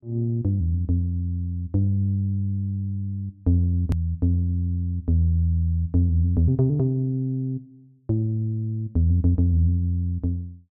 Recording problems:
edit click; at 4 s

